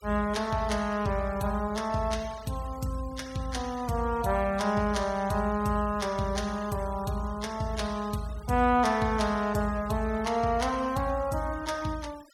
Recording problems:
noise reduction artefacts; signal-to-artefact ratio 20 dB

